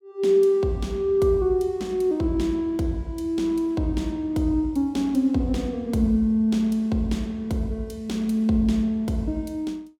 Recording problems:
none

